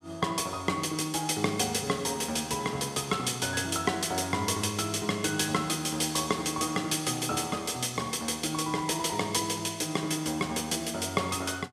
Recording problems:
none

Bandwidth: 14.5 kHz